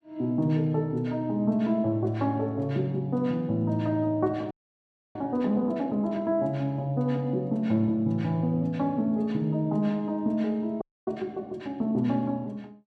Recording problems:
audio freezing; at 4.5 s for 0.5 s and at 11 s

